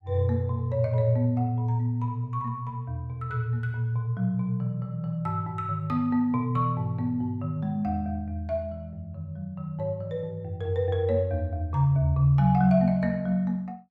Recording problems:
none

